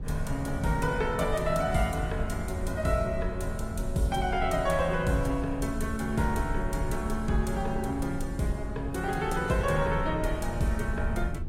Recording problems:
lossy codec; AAC, log-spectral distance 2 dB, nothing above 15.5 kHz
low-frequency rumble; below 88 Hz, SNR 7 dB

